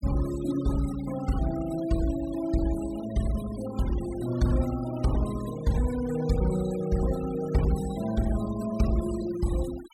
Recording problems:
denoising artefacts; signal-to-artefact ratio 16 dB

